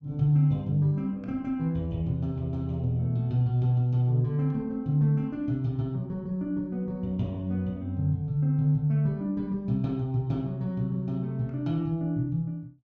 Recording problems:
none

